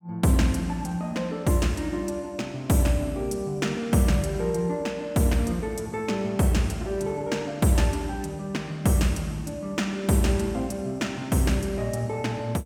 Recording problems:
none

